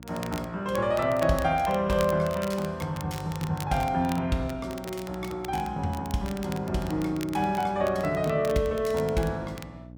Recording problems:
hum; 60 Hz, harmonics up to 600 Hz, SNR 20 dB
crackling; vinyl, SNR 17 dB

